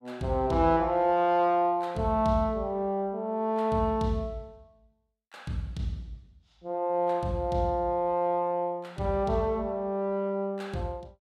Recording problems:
none

